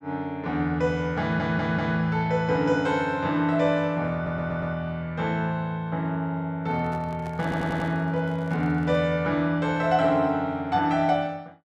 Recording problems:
audio stuttering; at 1 s, at 4 s and at 7.5 s
handling noise; from 6.5 to 9 s; peak -11 dB vs average level

